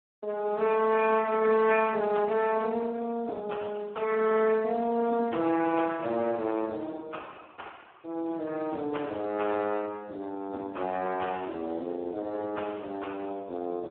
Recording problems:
telephone audio; 190 Hz to 2.8 kHz, Speex

